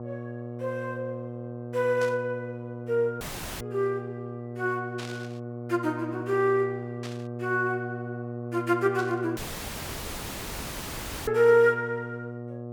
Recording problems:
electrical hum; 60 Hz, harmonics up to 1.2 kHz, SNR 10 dB
burst of static; 5 times, first at 2 s; peak -9 dB vs average level
dropout; at 3 s and at 9.5 s for 2 s

